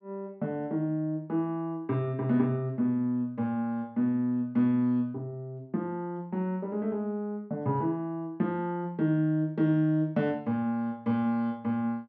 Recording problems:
none

